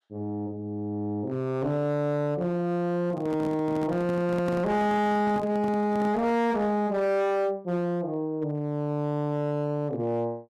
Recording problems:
distortion; hard clipping, uneven, signal-to-distortion ratio 11 dB
microphone handling noise; from 3 to 6.5 s; peak -4 dB vs average level

